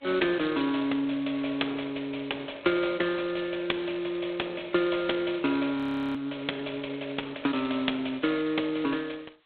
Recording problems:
phone line; 280 Hz to 3.7 kHz, G.726
audio freezing; at 6 s

